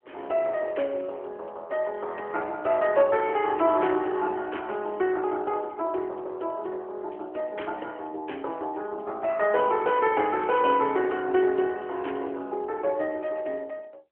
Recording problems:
telephone audio; 280 Hz to 3.1 kHz, AMR-NB

